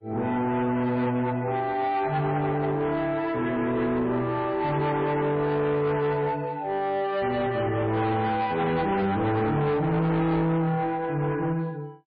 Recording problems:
codec artefacts; MP3, log-spectral distance 2 dB
distortion; soft clipping, signal-to-distortion ratio 8 dB

